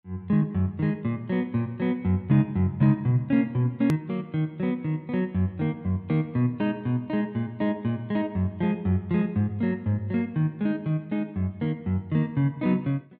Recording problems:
edit click; at 4 s

